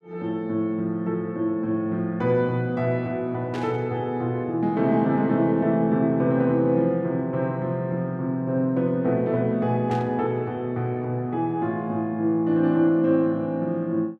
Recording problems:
burst of static; at 3.5 s and at 10 s; peak -10 dB vs average level

